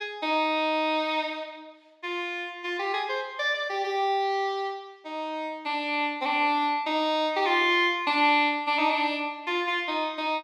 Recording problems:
none

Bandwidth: 14.5 kHz